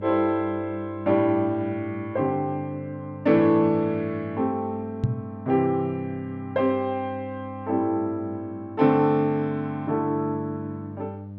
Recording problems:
hum; 50 Hz, harmonics up to 600 Hz, SNR 15 dB
microphone bump; at 5 s; peak +6 dB vs average level

